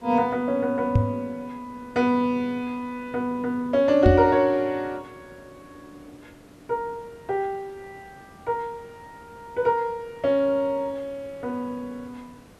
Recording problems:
background hiss; slope -6 dB per octave, SNR 26 dB
microphone bump; at 1 s and at 4 s; peak +8 dB vs average level

